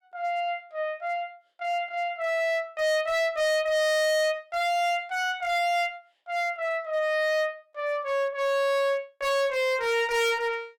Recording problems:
distorted audio; hard clipping, signal-to-distortion ratio 7 dB

